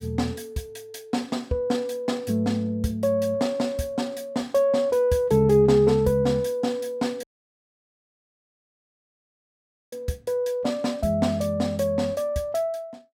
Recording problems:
dropout; at 7 s for 2.5 s

